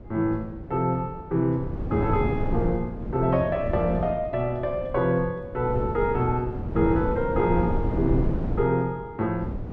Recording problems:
wind on the microphone; below 260 Hz, SNR 5 dB

